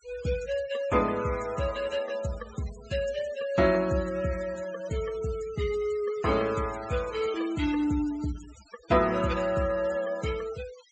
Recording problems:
treble missing; nothing above 8 kHz
denoising artefacts; signal-to-artefact ratio 17 dB

